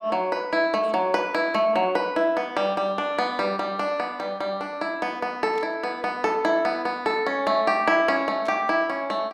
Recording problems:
burst of static; at 5.5 s and at 8.5 s; peak -16 dB vs average level

